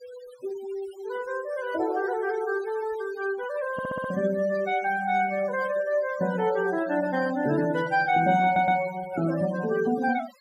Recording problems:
denoising artefacts; signal-to-artefact ratio 16 dB
audio stuttering; at 3.5 s and at 8.5 s
burst of static; at 7.5 s; peak -22 dB vs average level

